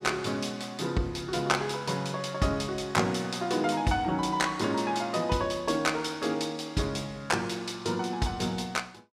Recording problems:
none

